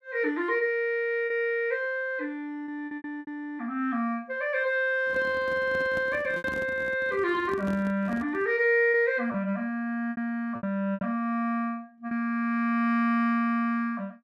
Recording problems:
lost packets; 5% of the sound replaced, filled with repeated pitch periods
handling noise; from 5 to 8.5 s; peak -6 dB vs average level

